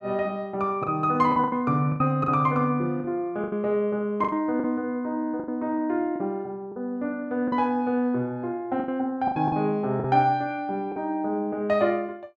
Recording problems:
packet loss; 8% of the sound replaced, filled with the last packet

